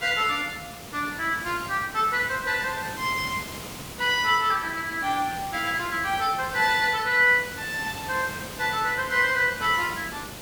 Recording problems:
background hiss; slope -3 dB per octave, SNR 13 dB

